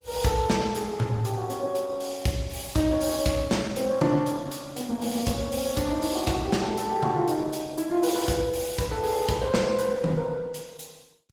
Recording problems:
lossy codec; Opus, log-spectral distance 5 dB

